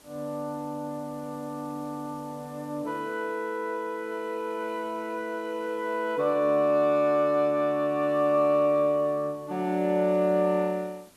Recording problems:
background hiss; slope -3 dB per octave, SNR 28 dB

